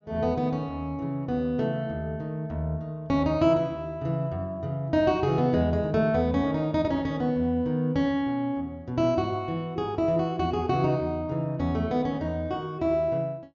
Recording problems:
low-pass filter; nothing above 7 kHz

